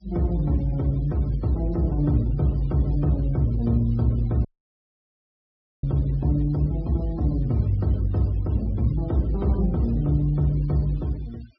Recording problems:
treble cut off; nothing above 5.5 kHz
denoising artefacts; signal-to-artefact ratio 26 dB
audio cutting out; at 4.5 s for 1.5 s

